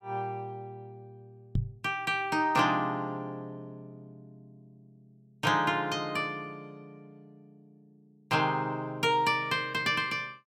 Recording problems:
microphone bump; at 1.5 s; peak +3 dB vs average level

